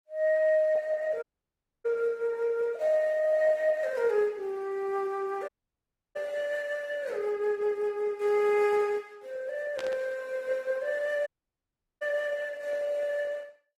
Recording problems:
lossy compression; Opus, log-spectral distance 2 dB, nothing above 16 kHz
dropout; at 1 s for 0.5 s, at 5.5 s for 0.5 s and at 11 s for 0.5 s
static burst; at 10 s; peak -7 dB vs average level

